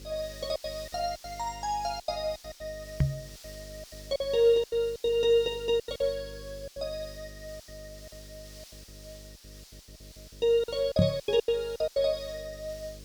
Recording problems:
electrical hum; 50 Hz, harmonics up to 550 Hz, SNR 20 dB
background hiss; slope +3 dB per octave, SNR 20 dB
packet loss; 14% of the sound replaced, filled with silence
microphone thump; at 3 s and at 11 s; peak +8 dB vs average level

